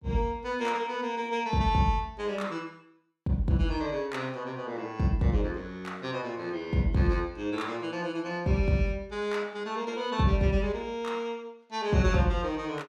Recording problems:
none

